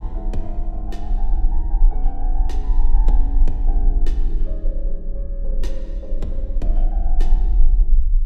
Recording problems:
rumble; below 38 Hz, strongest tone 24 Hz, SNR -13 dB

